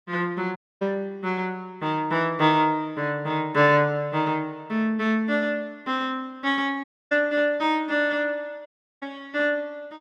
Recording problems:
dropout; at 0.5 s, at 7 s and at 8.5 s

